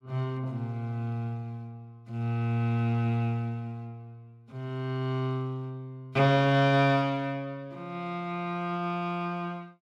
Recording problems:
none

